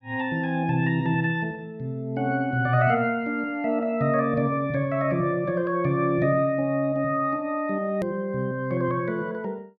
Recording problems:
edit click; at 8 s

